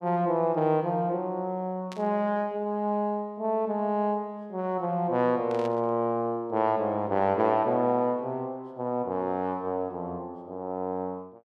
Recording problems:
burst of static; at 2 s and at 5.5 s; peak -11 dB vs average level

